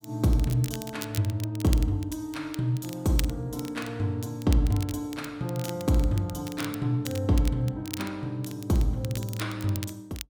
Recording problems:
crackling; vinyl, SNR 14 dB

